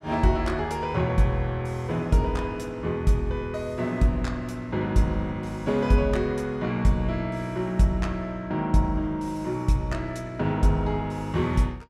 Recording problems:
none

